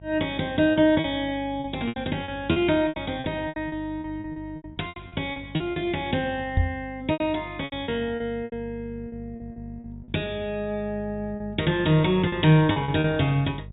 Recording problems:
low-pass filter; nothing above 4 kHz
hum; 50 Hz, harmonics up to 400 Hz, SNR 17 dB
lost packets; 12% of the sound replaced, filled with repeated pitch periods
microphone bump; at 6.5 s; peak +6 dB vs average level

